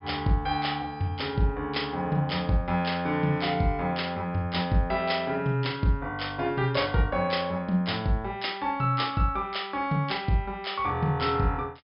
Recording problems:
low-pass filter; nothing above 5.5 kHz

